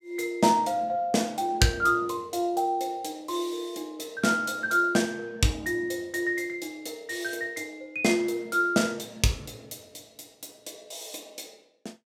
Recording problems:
none

